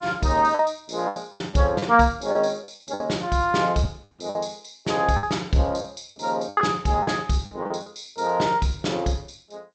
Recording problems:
lossy codec; G.722, log-spectral distance 5 dB, nothing above 8 kHz
lost packets; 9% of the sound replaced, filled with the last packet

